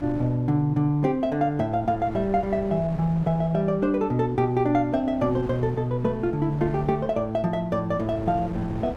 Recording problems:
wind noise; below 420 Hz, SNR 16 dB

